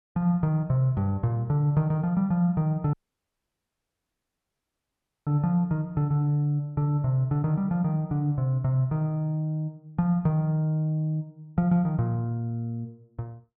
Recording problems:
audio cutting out; at 3 s for 2.5 s

